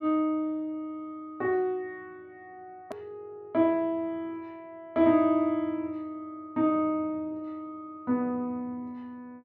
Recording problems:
treble cut off; nothing above 8 kHz
click at an edit; at 3 s

